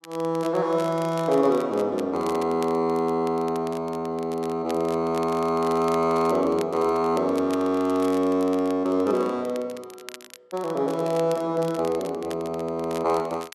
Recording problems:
crackling; vinyl, SNR 21 dB

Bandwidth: 12.5 kHz